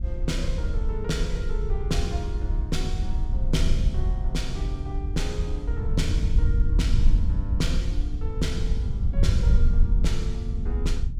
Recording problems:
wind on the microphone; below 68 Hz, SNR -6 dB

